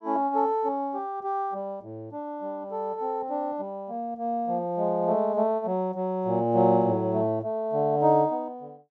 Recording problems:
none

